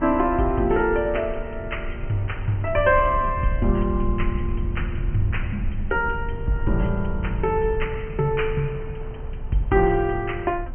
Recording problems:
low-pass filter; nothing above 3.1 kHz
rumble; below 78 Hz, SNR 8 dB
wind noise; below 810 Hz, SNR 22 dB

